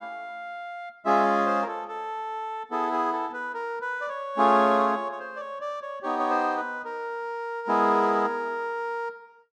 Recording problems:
none

